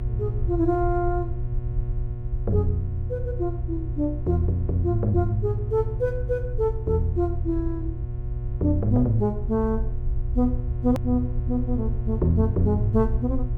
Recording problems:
hum; 60 Hz, harmonics up to 720 Hz, SNR 8 dB
low-frequency rumble; below 64 Hz, SNR 6 dB
hard cut with a click; at 11 s

